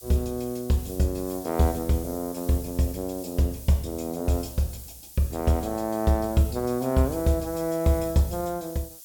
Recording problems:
hiss; SNR 15 dB

